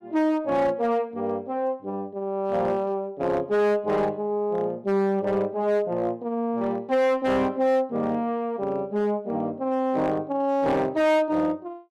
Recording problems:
distorted audio; hard clipping, signal-to-distortion ratio 12 dB

